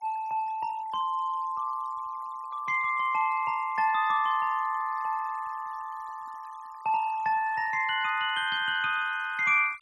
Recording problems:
denoising artefacts; signal-to-artefact ratio 26 dB

